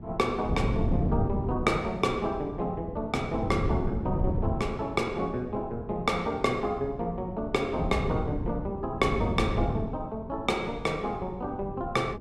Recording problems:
wind on the microphone; below 210 Hz, SNR 4 dB

